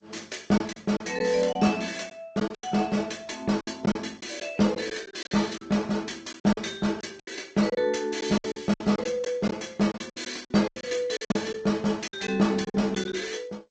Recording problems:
lossy codec; Opus, then G.722, log-spectral distance 5 dB
packet loss; 11% of the sound replaced, filled with silence

